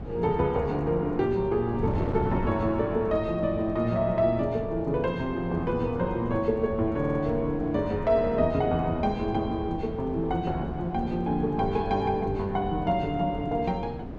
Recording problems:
wind noise; below 340 Hz, SNR 9 dB
stutter; at 7 s

